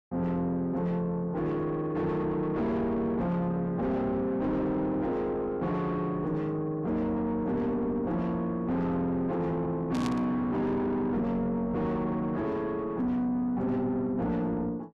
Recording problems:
distortion; soft clipping, signal-to-distortion ratio 6 dB
static burst; at 10 s; peak -6 dB vs average level

